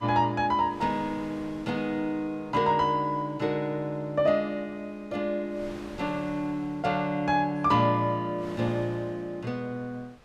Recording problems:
wind noise; below 1.8 kHz, SNR 22 dB

